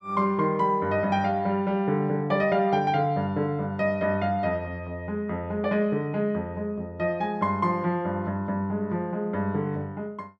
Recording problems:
none

